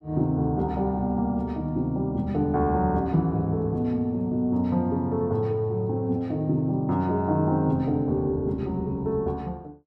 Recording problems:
none

